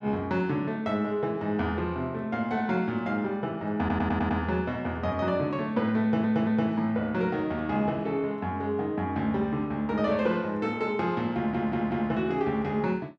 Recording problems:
audio stuttering; at 4 s, at 6 s and at 11 s

